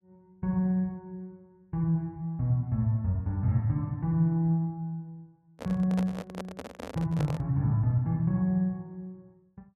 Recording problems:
handling noise; from 5.5 to 7.5 s; peak -4 dB vs average level

